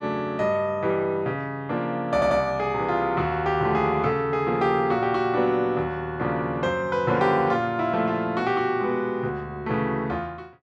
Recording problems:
stutter; at 2 s

